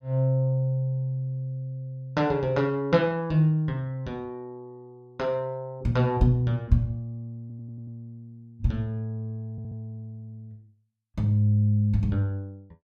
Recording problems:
stutter; at 7.5 s and at 9.5 s

